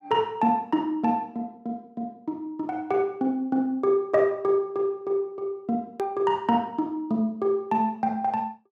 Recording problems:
hard cut with a click; at 6 s

